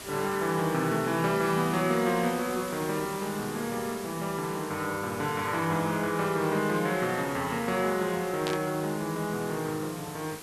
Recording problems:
hiss; slope -2 dB per octave, SNR 13 dB
burst of static; at 8.5 s; peak -1 dB vs average level

